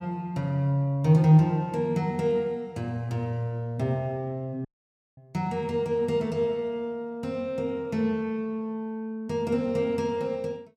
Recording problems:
dropout; at 4.5 s for 0.5 s

